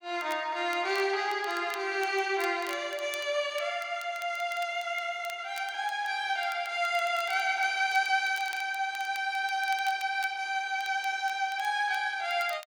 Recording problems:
crackle; vinyl, SNR 20 dB

